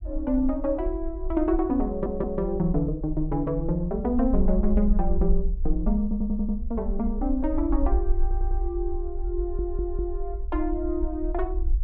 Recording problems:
rumble; below 50 Hz, strongest tone 20 Hz, SNR 4 dB
stutter; 4 times, first at 2 s

